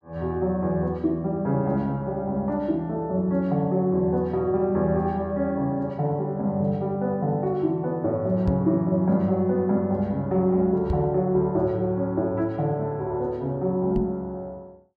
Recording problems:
microphone thump; at 8.5 s, at 11 s and at 14 s; peak +1 dB vs average level

